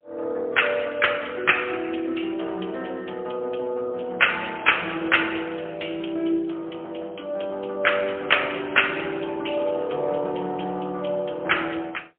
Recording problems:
phone line; 240 Hz to 3.3 kHz, AMR-NB, then MP3

